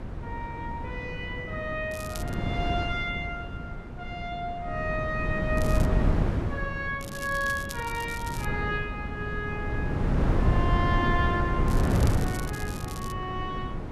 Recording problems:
electrical hum; 50 Hz, harmonics up to 600 Hz, SNR 22 dB
wind on the microphone; below 230 Hz, SNR -2 dB
crackling; 4 times, first at 2 s; loose cable, SNR 11 dB

